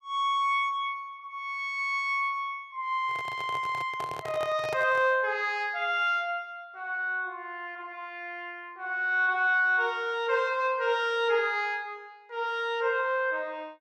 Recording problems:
handling noise; from 3 to 5 s; peak -4 dB vs average level

